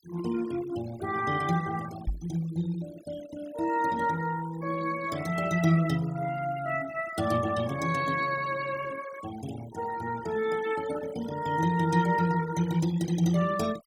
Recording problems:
denoising artefacts; signal-to-artefact ratio 15 dB
microphone thump; at 2 s; peak +1 dB vs average level

